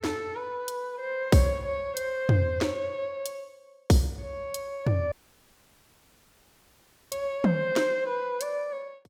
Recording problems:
audio cutting out; at 5 s for 2 s

